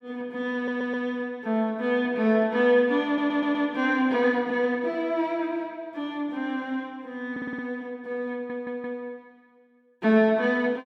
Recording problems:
audio stuttering; 4 times, first at 0.5 s

